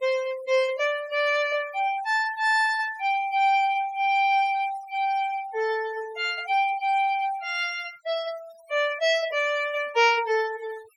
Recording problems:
denoising artefacts; signal-to-artefact ratio 18 dB

